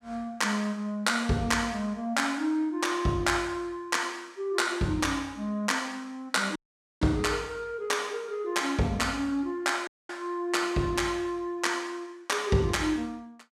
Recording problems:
audio cutting out; at 6.5 s and at 10 s

